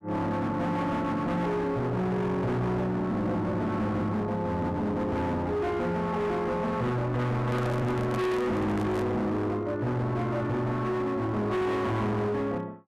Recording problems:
distorted audio; hard clipping, signal-to-distortion ratio 7 dB
microphone handling noise; from 7.5 to 9 s; peak -2 dB vs average level

